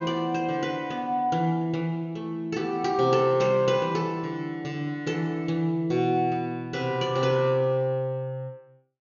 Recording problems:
treble cut off; nothing above 7 kHz

